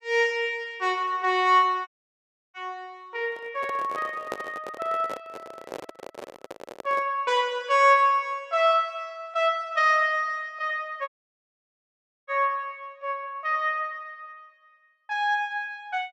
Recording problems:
audio cutting out; at 2 s for 0.5 s and at 11 s for 1 s
microphone handling noise; from 3.5 to 7 s; peak -3 dB vs average level

